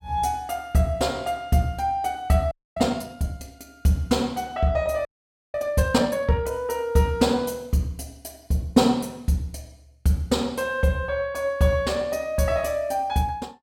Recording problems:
frozen audio; at 2.5 s and at 5 s

